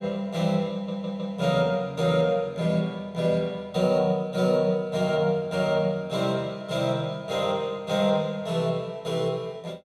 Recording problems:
stutter; at 0.5 s

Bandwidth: 14.5 kHz